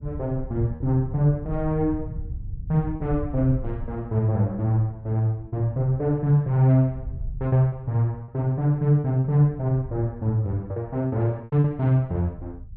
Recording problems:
low-frequency rumble; below 100 Hz, SNR 14 dB
packet loss; 4% of the sound replaced, filled with repeated pitch periods

